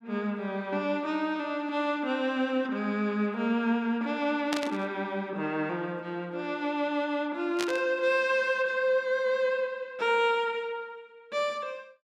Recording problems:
burst of static; at 4.5 s and at 7.5 s; peak +1 dB vs average level

